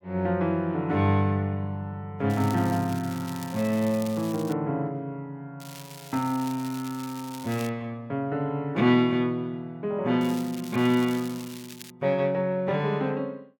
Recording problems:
crackle; from 2.5 to 4.5 s, from 5.5 to 7.5 s and from 10 to 12 s; loose cable, SNR 17 dB

